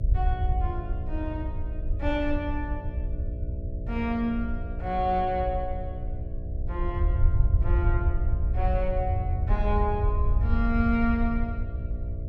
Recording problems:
mains hum; 60 Hz, harmonics up to 660 Hz, SNR 10 dB
rumble; below 80 Hz, SNR -1 dB

